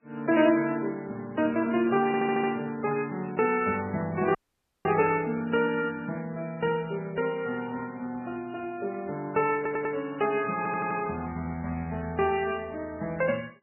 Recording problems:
lossy codec; MP3, then Vorbis, log-spectral distance 3 dB, nothing above 2.8 kHz
stutter; at 2 s, at 9.5 s and at 11 s
audio cutting out; at 4.5 s for 0.5 s

